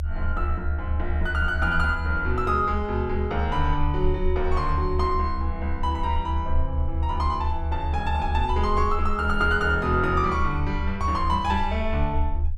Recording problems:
low-frequency rumble; below 76 Hz, SNR 3 dB

